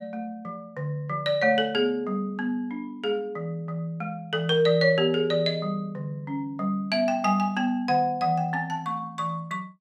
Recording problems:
none

